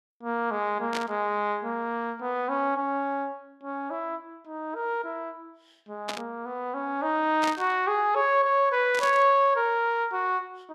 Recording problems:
burst of static; 4 times, first at 1 s; peak -2 dB vs average level

